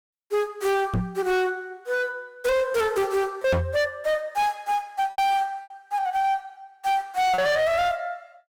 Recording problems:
distorted audio; hard clipping, uneven, signal-to-distortion ratio 8 dB
packet loss; 3% of the sound replaced, filled with repeated pitch periods
microphone thump; at 1 s and at 3.5 s; peak +6 dB vs average level

